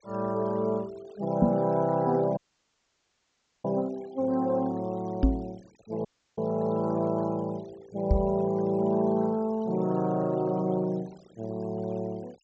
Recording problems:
treble cut off; nothing above 8 kHz
denoising artefacts; signal-to-artefact ratio 25 dB
microphone thump; at 1.5 s, at 5 s and at 8 s; peak +9 dB vs average level
dropout; at 2.5 s for 1.5 s and at 6 s

